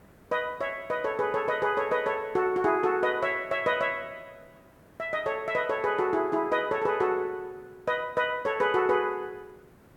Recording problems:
hiss; SNR 29 dB

